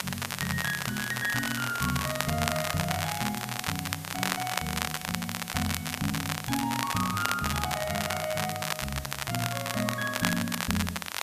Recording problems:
hiss; slope -1 dB per octave, SNR 10 dB
crackling; vinyl, SNR 0 dB

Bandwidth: 14.5 kHz